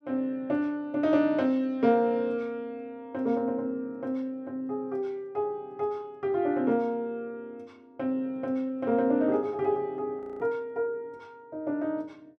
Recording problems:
frozen audio; at 10 s

